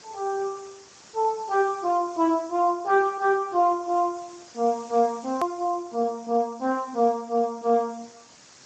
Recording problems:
codec artefacts; Speex, log-spectral distance 10 dB, nothing above 13.1 kHz
hiss; SNR 24 dB
hard cut with a click; at 5.5 s

